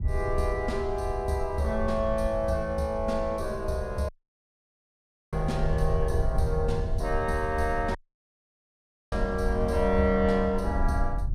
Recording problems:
rumble; below 78 Hz, SNR 6 dB
audio cutting out; at 4 s for 1 s and at 8 s for 1 s

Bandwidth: 15.5 kHz